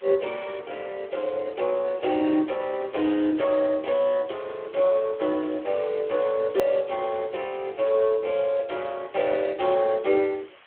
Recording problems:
phone line; 320 Hz to 3.4 kHz, Speex
hiss; SNR 27 dB
hard cut with a click; at 6.5 s

